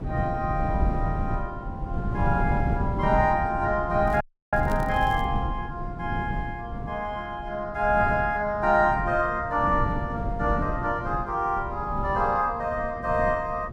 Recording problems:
wind on the microphone; below 190 Hz, SNR 6 dB
crackling; from 4 to 5 s; loose cable, SNR 26 dB
audio cutting out; at 4 s

